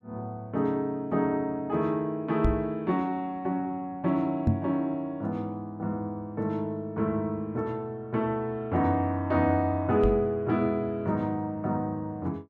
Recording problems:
microphone thump; at 2.5 s, at 4.5 s and at 10 s; peak +8 dB vs average level

